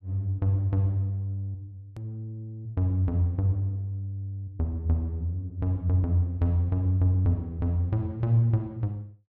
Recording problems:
edit click; at 2 s

